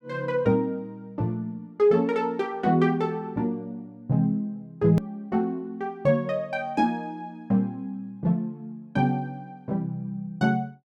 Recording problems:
edit click; at 5 s

